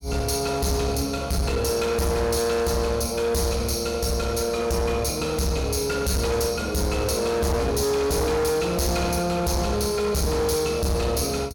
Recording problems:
distortion; hard clipping, uneven, signal-to-distortion ratio 7 dB

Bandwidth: 17.5 kHz